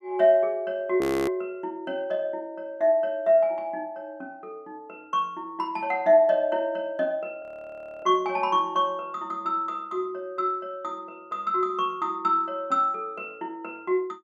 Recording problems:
frozen audio; at 1 s and at 7.5 s for 0.5 s

